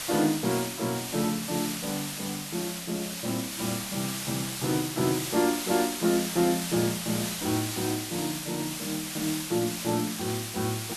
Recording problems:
hiss; slope +1 dB per octave, SNR 3 dB

